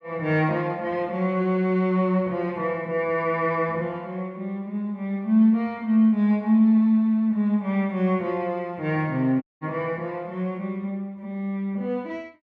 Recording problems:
dropout; at 9.5 s

